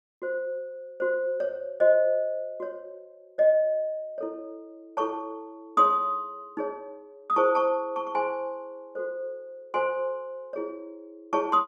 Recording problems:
none

